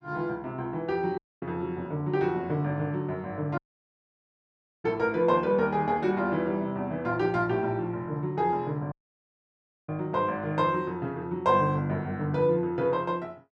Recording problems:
dropout; at 1 s, at 3.5 s for 1.5 s and at 9 s for 1 s

